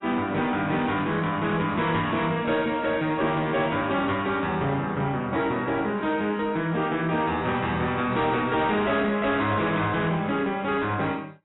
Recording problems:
codec artefacts; AAC, log-spectral distance 3 dB, nothing above 3.8 kHz
distorted audio; soft clipping, signal-to-distortion ratio 10 dB

